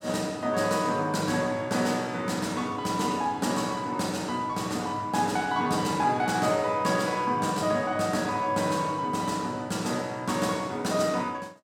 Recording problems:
none

